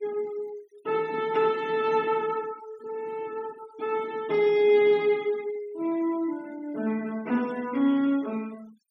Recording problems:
noise reduction artefacts; signal-to-artefact ratio 23 dB

